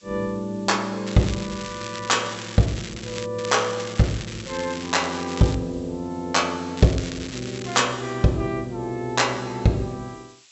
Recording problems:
low-pass filter; nothing above 7.8 kHz
hiss; slope +4 dB per octave, SNR 28 dB
crackle; from 1 to 3.5 s, from 3.5 to 5.5 s and from 7 to 8 s; loose cable, SNR 12 dB

